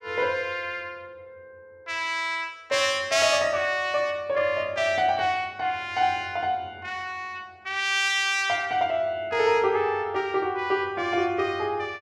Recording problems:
none

